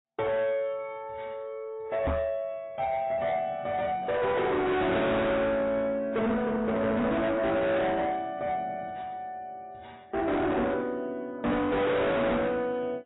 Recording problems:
lossy compression; AAC, log-spectral distance 2 dB, nothing above 3.8 kHz
distorted audio; soft clipping, signal-to-distortion ratio 6 dB
knock on the microphone; at 2 s; peak +3 dB vs average level

